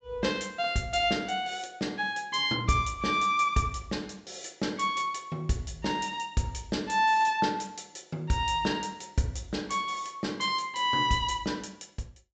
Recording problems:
low-pass filter; nothing above 8 kHz

